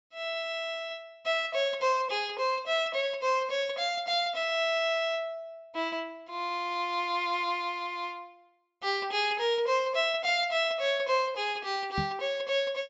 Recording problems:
low-pass filter; nothing above 8 kHz
microphone bump; at 12 s; peak -1 dB vs average level

